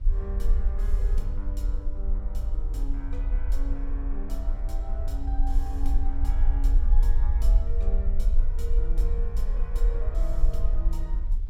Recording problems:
rumble; below 44 Hz, SNR -13 dB
wind on the microphone; below 190 Hz, SNR 15 dB

